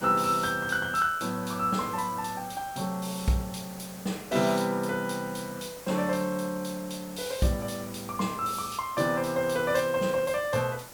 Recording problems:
background hiss; slope -3 dB per octave, SNR 15 dB

